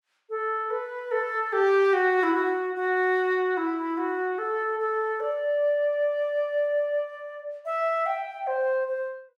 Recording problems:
none

